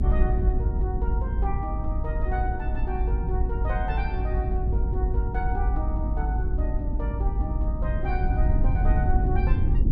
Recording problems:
low-frequency rumble; below 78 Hz, SNR -8 dB

